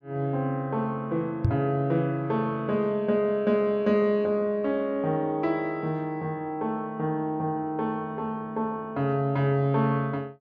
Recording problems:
microphone thump; at 1.5 s; peak +7 dB vs average level

